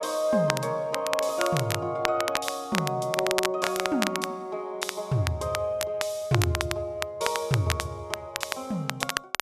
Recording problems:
crackle; vinyl, SNR 4 dB

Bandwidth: 13.5 kHz